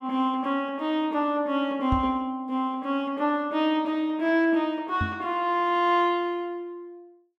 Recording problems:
knock on the microphone; at 2 s and at 5 s; peak +2 dB vs average level

